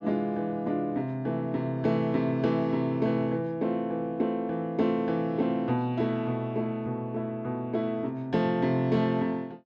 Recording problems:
none

